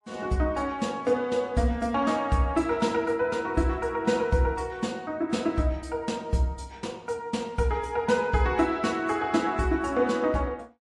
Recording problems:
lossy codec; MP3, log-spectral distance 2 dB, nothing above 11 kHz

